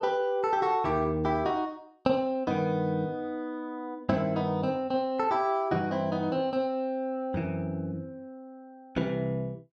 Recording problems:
none

